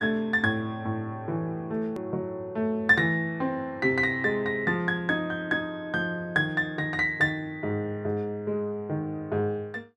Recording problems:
edit click; at 2 s

